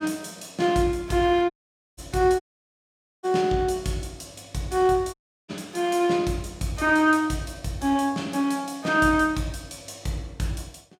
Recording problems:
audio cutting out; at 1.5 s, at 2.5 s for 1 s and at 5 s

